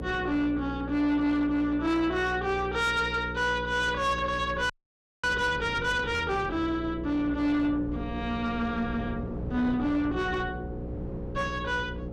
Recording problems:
distortion; soft clipping, signal-to-distortion ratio 12 dB
mains hum; 60 Hz, harmonics up to 540 Hz, SNR 10 dB
wind noise; below 330 Hz, SNR 16 dB
frozen audio; at 4.5 s for 0.5 s

